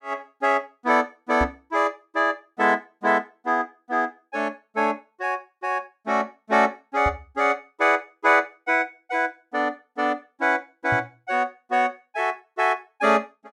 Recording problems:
microphone bump; at 1.5 s, at 7 s and at 11 s; peak -1 dB vs average level

